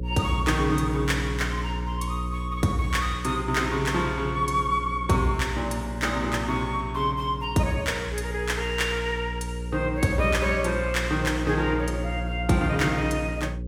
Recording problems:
hum; 60 Hz, harmonics up to 540 Hz, SNR 7 dB

